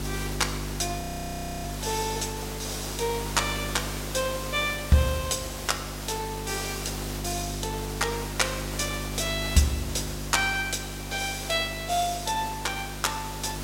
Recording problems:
hum; 50 Hz, harmonics up to 400 Hz, SNR 8 dB
hiss; slope -3 dB per octave, SNR 8 dB
audio freezing; at 1 s for 0.5 s

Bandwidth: 16 kHz